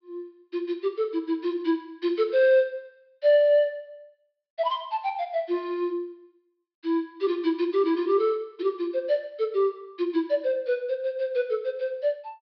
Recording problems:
low-pass filter; nothing above 5.5 kHz

